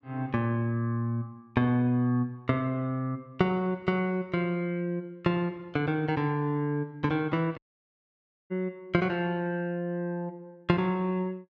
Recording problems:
dropout; at 7.5 s for 1 s

